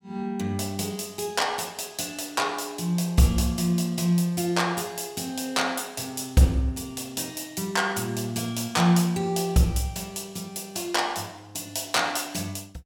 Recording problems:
none

